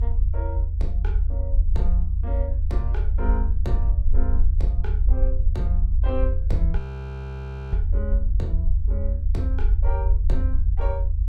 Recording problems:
low-frequency rumble; below 76 Hz, SNR -10 dB
audio freezing; at 7 s for 1 s

